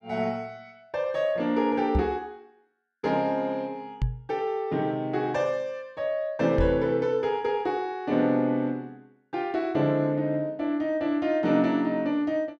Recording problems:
microphone bump; at 2 s, at 4 s and at 6.5 s; peak +4 dB vs average level

